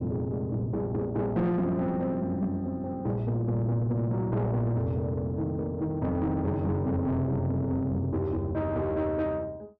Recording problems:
distorted audio; soft clipping, signal-to-distortion ratio 10 dB

